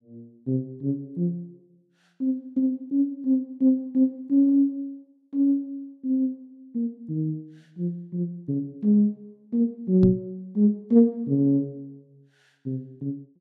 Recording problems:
knock on the microphone; at 10 s; peak +4 dB vs average level

